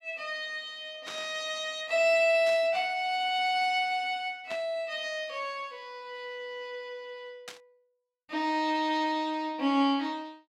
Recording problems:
burst of static; 4 times, first at 1 s; peak -8 dB vs average level

